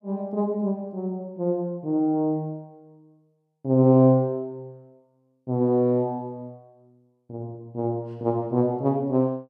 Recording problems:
none

